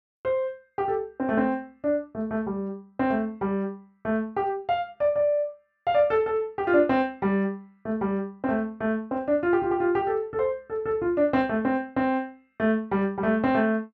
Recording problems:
none

